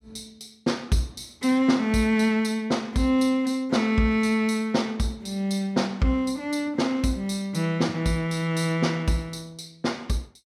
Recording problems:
none

